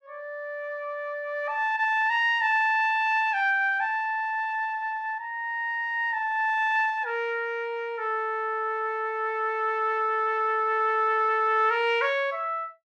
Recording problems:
none

